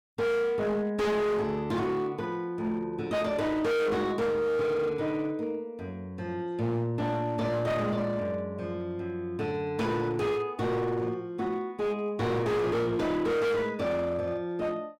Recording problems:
distortion; hard clipping, signal-to-distortion ratio 7 dB

